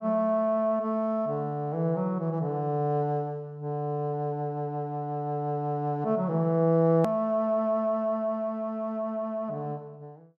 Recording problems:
edit click; at 7 s

